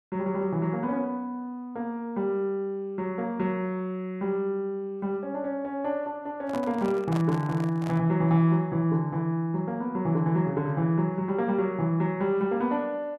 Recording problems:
handling noise; from 6.5 to 8 s; peak -4 dB vs average level

